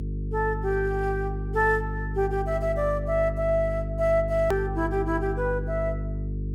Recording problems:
hum; 50 Hz, harmonics up to 450 Hz, SNR 5 dB
edit click; at 4.5 s

